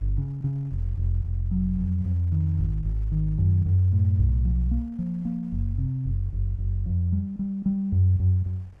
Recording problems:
wind noise; below 130 Hz, SNR 30 dB

